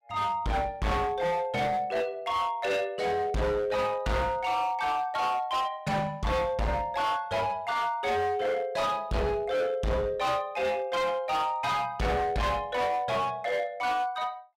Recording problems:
distortion; hard clipping, signal-to-distortion ratio 7 dB

